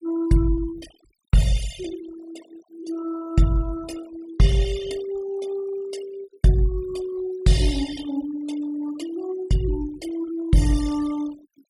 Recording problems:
denoising artefacts; signal-to-artefact ratio 17 dB

